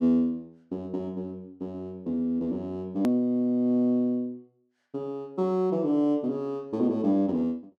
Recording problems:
edit click; at 3 s

